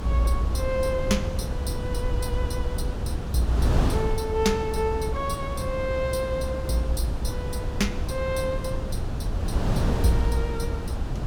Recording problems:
rumble; below 68 Hz, SNR 5 dB
wind on the microphone; below 300 Hz, SNR 2 dB

